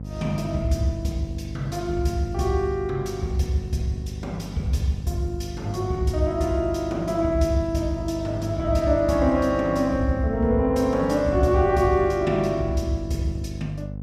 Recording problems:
mains hum; 50 Hz, harmonics up to 550 Hz, SNR 11 dB

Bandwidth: 15.5 kHz